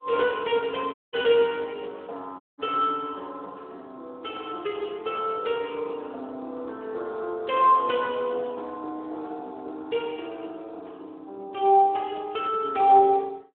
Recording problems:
telephone audio; 280 Hz to 3.4 kHz, Speex
audio cutting out; at 1 s and at 2.5 s

